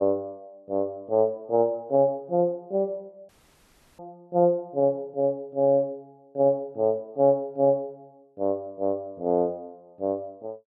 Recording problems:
dropout; at 3.5 s for 0.5 s

